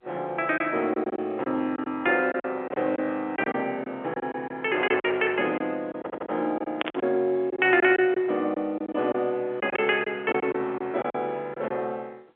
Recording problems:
phone line; 240 Hz to 3.5 kHz, G.711
lost packets; 10% of the sound replaced, filled with silence
stutter; at 6 s
burst of static; at 7 s; peak +3 dB vs average level

